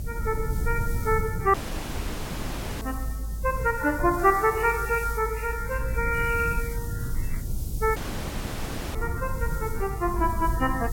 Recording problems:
lossy codec; MP3, then MP3, log-spectral distance 6 dB
background hiss; SNR 16 dB
low-frequency rumble; below 98 Hz, SNR 6 dB
audio cutting out; at 1.5 s for 1.5 s and at 8 s for 1 s
crackle; from 4.5 to 7.5 s; loose cable, SNR 15 dB

